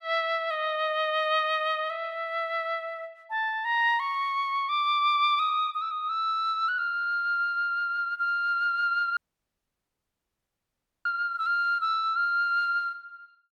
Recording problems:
dropout; at 9 s for 2 s

